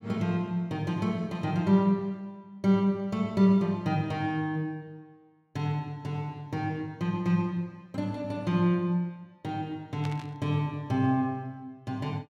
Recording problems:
burst of static; at 10 s; peak -9 dB vs average level

